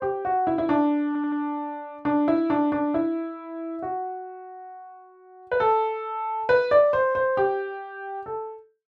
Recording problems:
audio stuttering; at 1 s

